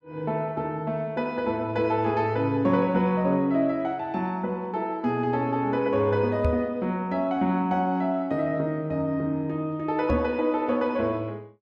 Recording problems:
microphone bump; at 6.5 s and at 10 s; peak +3 dB vs average level

